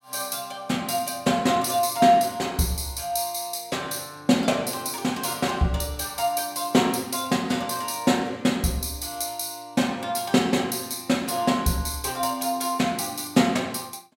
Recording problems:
none

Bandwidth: 16.5 kHz